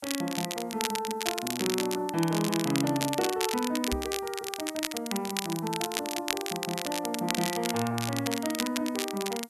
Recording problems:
hiss; slope +2 dB per octave, SNR 27 dB
crackling; vinyl, SNR 3 dB
knock on the microphone; at 4 s; peak 0 dB vs average level

